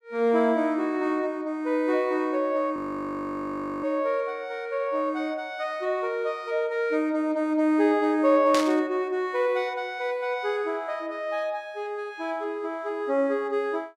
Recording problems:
audio freezing; at 3 s for 1 s
burst of static; at 8.5 s; peak +1 dB vs average level

